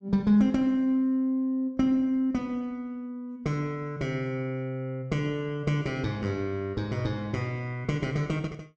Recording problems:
none

